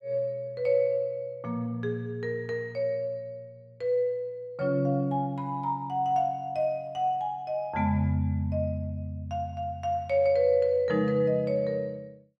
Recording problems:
none

